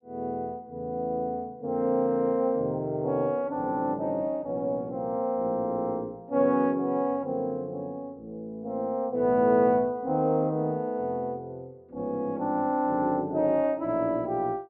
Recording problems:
none

